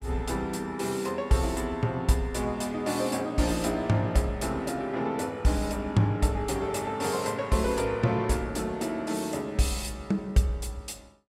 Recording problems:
none

